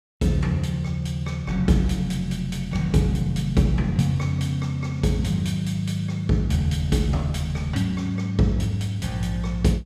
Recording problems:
none

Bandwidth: 14 kHz